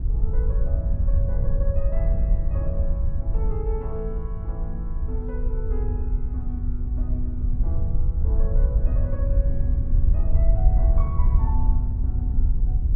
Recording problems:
wind on the microphone; below 66 Hz, SNR -12 dB

